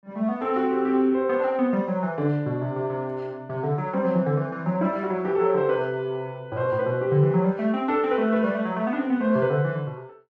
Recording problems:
none

